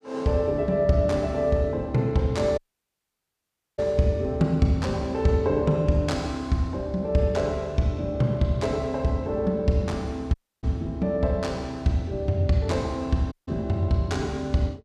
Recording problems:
audio cutting out; at 2.5 s for 1 s, at 10 s and at 13 s

